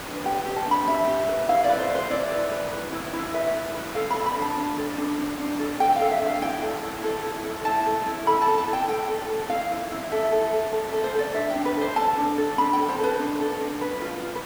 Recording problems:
hiss; slope -5 dB per octave, SNR 10 dB

